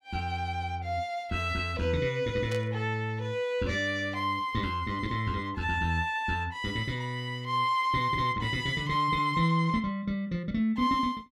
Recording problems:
static burst; at 2.5 s; peak -9 dB vs average level

